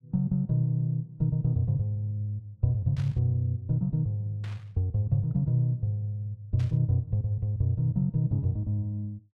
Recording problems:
burst of static; at 3 s, at 4.5 s and at 6.5 s; peak -15 dB vs average level

